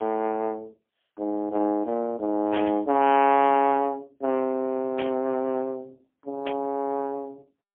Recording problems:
phone line; 220 Hz to 3.2 kHz, AMR-NB, then MP3
burst of static; at 2.5 s, at 5 s and at 6.5 s; peak -4 dB vs average level

